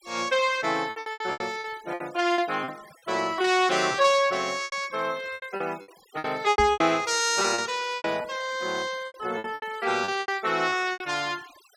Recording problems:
denoising artefacts; signal-to-artefact ratio 22 dB
lost packets; 15% of the sound replaced, filled with repeated pitch periods
microphone bump; at 6.5 s; peak -3 dB vs average level

